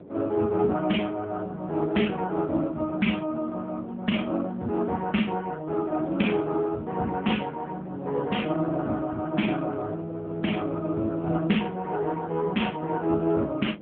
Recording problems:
telephone audio; 130 Hz to 3.4 kHz, AMR-NB
wind on the microphone; below 460 Hz, SNR 21 dB

